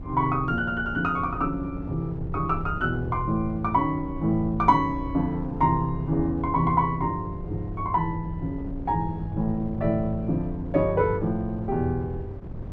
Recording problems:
wind on the microphone; below 160 Hz, SNR 11 dB

